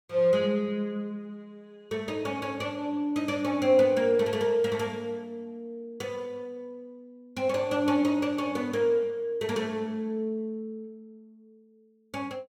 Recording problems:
none

